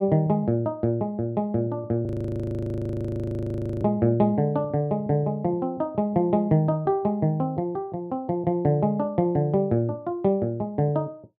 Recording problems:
frozen audio; at 2 s for 2 s

